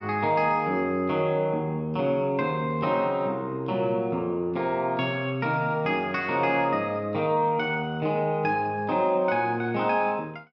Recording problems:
none

